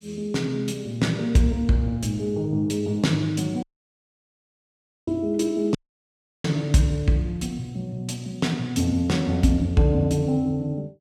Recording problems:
audio cutting out; at 3.5 s for 1.5 s and at 6 s for 0.5 s

